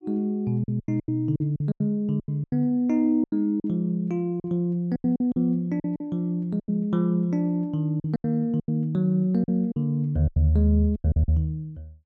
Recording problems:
lost packets; 13% of the sound replaced, filled with silence

